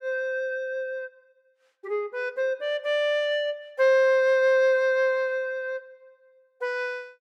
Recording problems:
none

